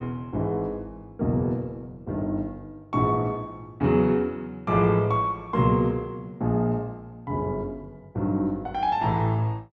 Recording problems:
none

